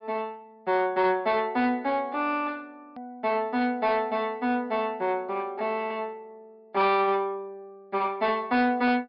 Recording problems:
treble cut off; nothing above 5.5 kHz
distortion; soft clipping, signal-to-distortion ratio 11 dB
edit click; at 3 s

